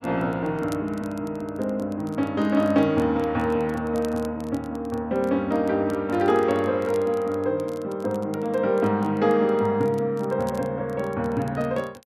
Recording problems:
crackle; vinyl, SNR 27 dB

